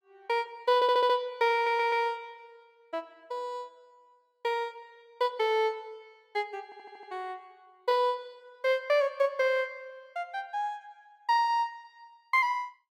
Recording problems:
audio stuttering; at 1 s, at 1.5 s and at 6.5 s

